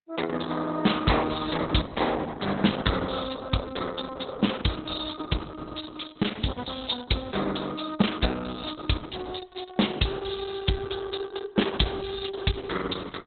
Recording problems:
lossy codec; Opus, log-spectral distance 8 dB, nothing above 4 kHz

